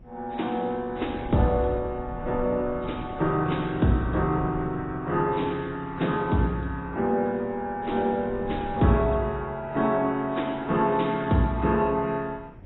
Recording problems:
lossy compression; AAC, then MP2, log-spectral distance 3 dB, nothing above 3.8 kHz
wind on the microphone; below 200 Hz, SNR 16 dB

